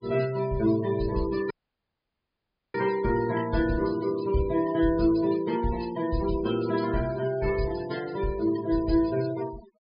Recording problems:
treble missing; nothing above 5 kHz
noise reduction artefacts; signal-to-artefact ratio 16 dB
dropout; at 1.5 s for 1 s

